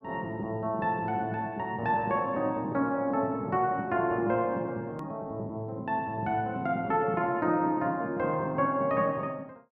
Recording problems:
edit click; at 5 s

